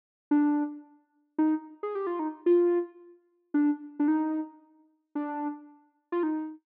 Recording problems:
low-pass filter; nothing above 5.5 kHz

